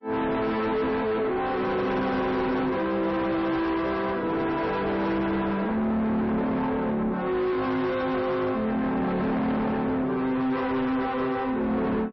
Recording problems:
codec artefacts; MP3, log-spectral distance 2 dB, nothing above 5.7 kHz
distortion; soft clipping, signal-to-distortion ratio 7 dB

